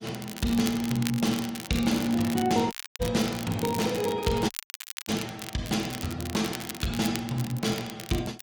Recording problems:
codec artefacts; Opus, log-spectral distance 3 dB, nothing above 18.9 kHz
crackle; vinyl, SNR 10 dB
dropout; at 2.5 s and at 4.5 s for 0.5 s

